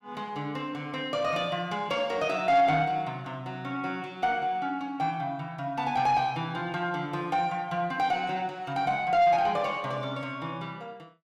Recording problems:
distorted audio; soft clipping, signal-to-distortion ratio 10 dB

